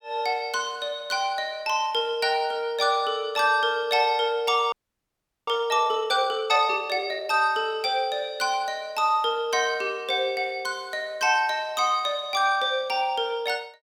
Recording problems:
audio freezing; at 4.5 s for 1 s

